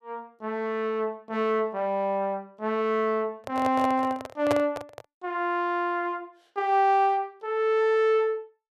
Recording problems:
handling noise; from 3.5 to 5 s; peak +2 dB vs average level

